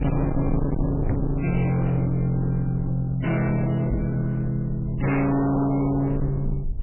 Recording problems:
lossy codec; MP3, log-spectral distance 2 dB, nothing above 2.7 kHz
distortion; hard clipping, signal-to-distortion ratio 6 dB
low-frequency rumble; below 140 Hz, SNR 8 dB
microphone bump; at 1 s and at 4 s; peak +4 dB vs average level

